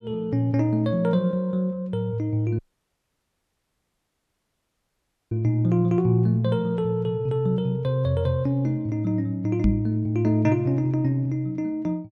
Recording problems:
audio cutting out; at 2.5 s for 2.5 s
knock on the microphone; at 9.5 s; peak +6 dB vs average level

